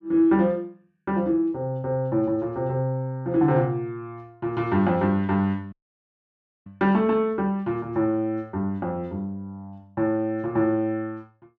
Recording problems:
dropout; at 5.5 s for 1 s

